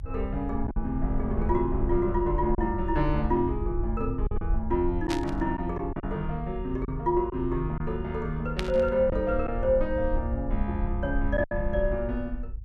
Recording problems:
rumble; below 66 Hz, SNR 6 dB
packet loss; 3% of the sound replaced, filled with silence
static burst; at 5 s and at 8.5 s; peak +1 dB vs average level

